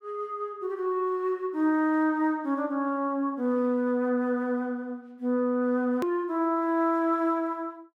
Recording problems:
click at an edit; at 6 s

